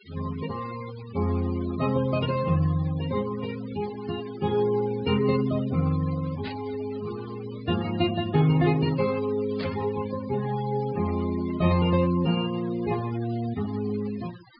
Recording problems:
low-pass filter; nothing above 5 kHz
noise reduction artefacts; signal-to-artefact ratio 15 dB
burst of static; at 6.5 s and at 9.5 s; peak -9 dB vs average level

